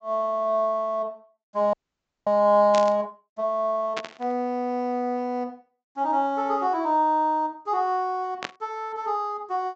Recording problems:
low-pass filter; nothing above 8 kHz
audio freezing; at 1.5 s for 0.5 s
burst of static; at 2.5 s, at 4 s and at 8.5 s; peak -2 dB vs average level

